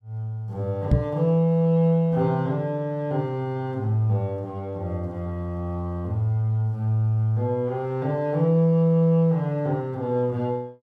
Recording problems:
knock on the microphone; at 1 s; peak +8 dB vs average level

